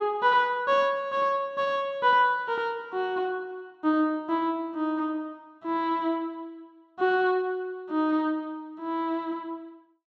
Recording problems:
none

